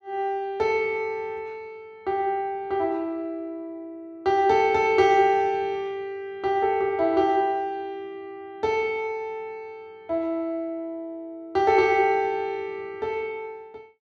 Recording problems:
none

